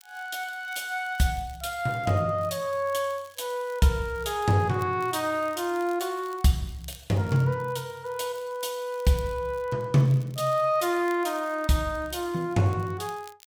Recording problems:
crackling; vinyl, SNR 26 dB

